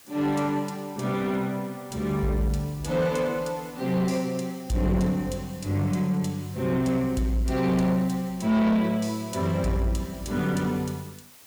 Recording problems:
distortion; soft clipping, signal-to-distortion ratio 12 dB
hiss; slope 0 dB per octave, SNR 22 dB

